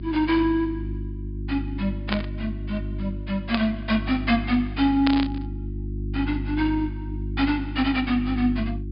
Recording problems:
treble cut off; nothing above 4.9 kHz
hum; 50 Hz, harmonics up to 350 Hz, SNR 7 dB
static burst; at 2 s, at 3.5 s and at 5 s; peak +2 dB vs average level

